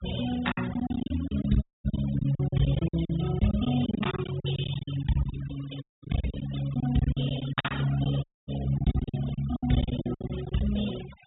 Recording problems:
low-pass filter; nothing above 4 kHz
noise reduction artefacts; signal-to-artefact ratio 14 dB
packet loss; 17% of the sound replaced, filled with silence
audio cutting out; at 1.5 s, at 6 s and at 8 s

